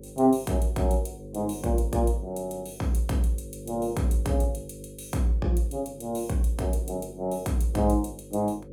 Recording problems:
hum; 50 Hz, harmonics up to 550 Hz, SNR 16 dB

